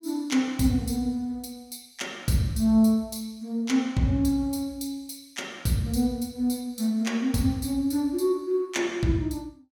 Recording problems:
none

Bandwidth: 17.5 kHz